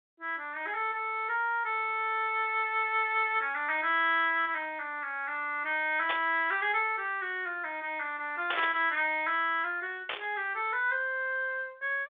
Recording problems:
telephone audio; 300 Hz to 3.6 kHz, G.726
burst of static; at 6 s, at 8.5 s and at 10 s; peak 0 dB vs average level

